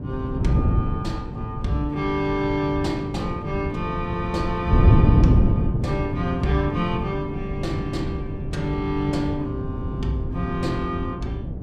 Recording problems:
wind on the microphone; below 190 Hz, SNR -1 dB

